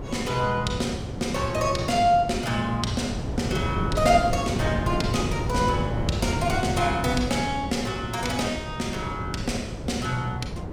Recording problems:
wind noise; below 330 Hz, SNR 5 dB

